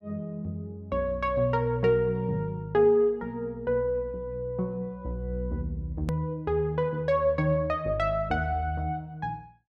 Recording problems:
edit click; at 6 s

